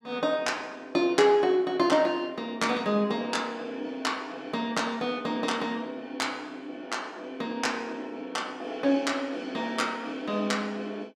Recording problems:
none

